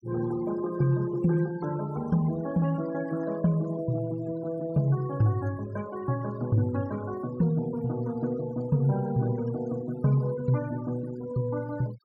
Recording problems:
denoising artefacts; signal-to-artefact ratio 19 dB

